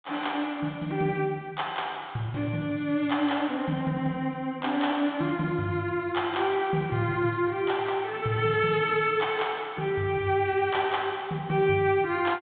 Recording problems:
treble cut off; nothing above 4 kHz

